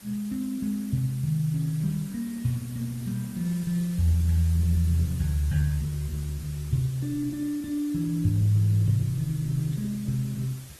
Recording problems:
lossy compression; Opus, log-spectral distance 4 dB, nothing above 12 kHz
background hiss; slope -1 dB per octave, SNR 20 dB

